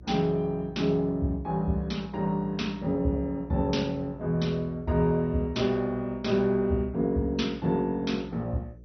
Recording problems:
lossy codec; MP2, log-spectral distance 2 dB, nothing above 6 kHz
hum; 60 Hz, harmonics up to 600 Hz, SNR 20 dB

